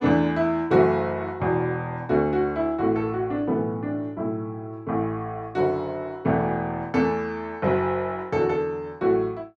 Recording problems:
none

